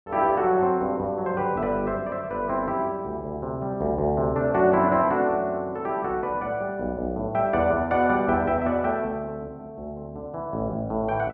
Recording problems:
none

